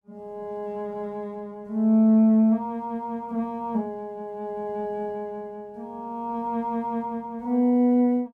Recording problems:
none

